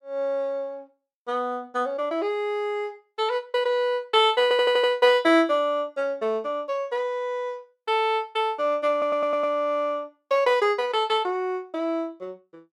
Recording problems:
audio stuttering; at 4.5 s and at 9 s

